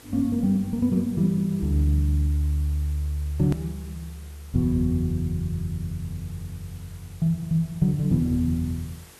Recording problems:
electrical hum; 50 Hz, harmonics up to 500 Hz, SNR 33 dB
hiss; SNR 24 dB
click at an edit; at 3.5 s

